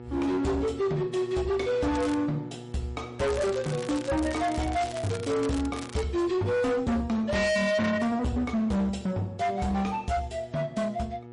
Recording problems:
lossy compression; MP3, log-spectral distance 2 dB, nothing above 10.4 kHz
distortion; hard clipping, uneven, signal-to-distortion ratio 7 dB
electrical hum; 60 Hz, harmonics up to 1.3 kHz, SNR 17 dB
crackle; at 2 s and from 3 to 6 s; loose cable, SNR 15 dB

